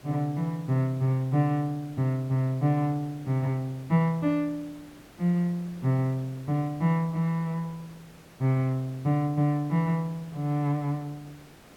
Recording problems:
hiss; slope -5 dB per octave, SNR 24 dB

